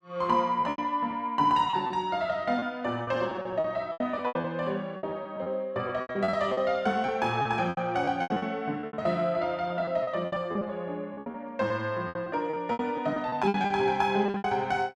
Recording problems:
lost packets; 15% of the sound replaced, filled with repeated pitch periods

